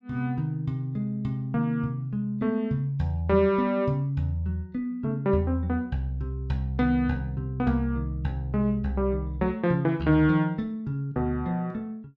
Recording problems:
none

